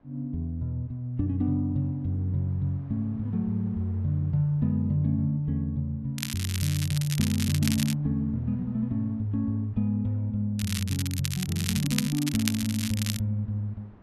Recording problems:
wind on the microphone; below 550 Hz, SNR 28 dB
crackling; from 6 to 8 s and from 11 to 13 s; loose cable, SNR 6 dB

